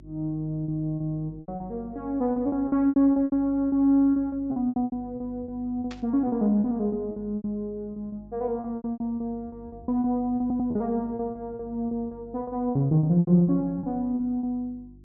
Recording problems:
treble cut off; nothing above 8 kHz
hum; 50 Hz, harmonics up to 350 Hz, SNR 22 dB
packet loss; 16% of the sound replaced, filled with repeated pitch periods
static burst; at 6 s; peak -11 dB vs average level
audio stuttering; at 10 s

